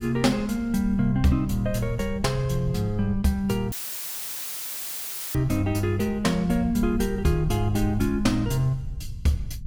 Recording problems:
rumble; below 92 Hz, SNR 11 dB
audio cutting out; at 3.5 s for 1.5 s; filled with static

